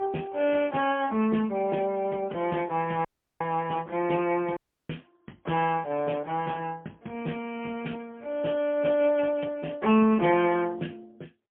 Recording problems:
telephone audio; 170 Hz to 3.3 kHz, AMR-NB, then MP3
dropout; at 3 s and at 4.5 s

